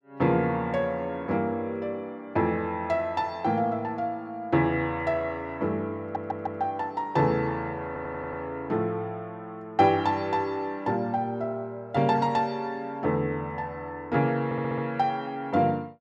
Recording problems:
audio stuttering; at 6 s, at 8 s and at 14 s

